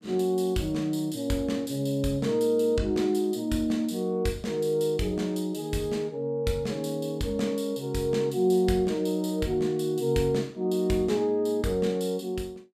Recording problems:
none

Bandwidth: 14.5 kHz